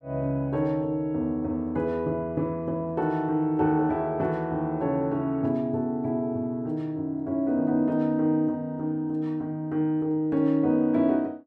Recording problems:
none

